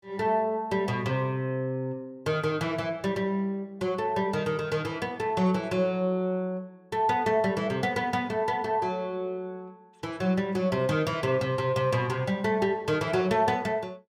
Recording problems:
none

